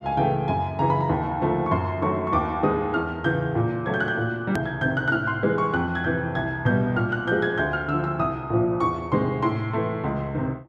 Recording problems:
click at an edit; at 4.5 s

